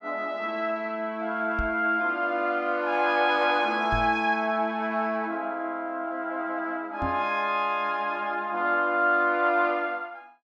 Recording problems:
microphone thump; at 1.5 s, at 4 s and at 7 s; peak -3 dB vs average level

